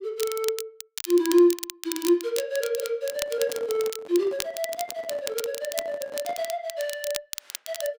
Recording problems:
crackling; vinyl, SNR 9 dB
handling noise; from 3 to 6.5 s; peak -11 dB vs average level

